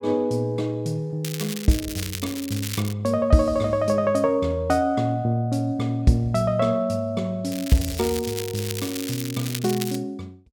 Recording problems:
crackling; from 1 to 3 s and from 7.5 to 10 s; loose cable, SNR 9 dB

